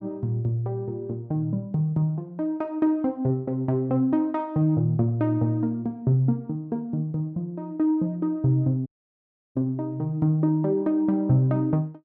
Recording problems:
audio cutting out; at 9 s for 0.5 s

